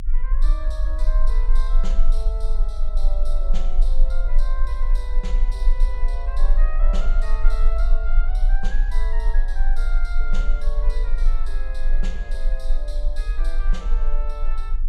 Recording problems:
rumble; below 34 Hz, strongest tone 20 Hz, SNR -13 dB

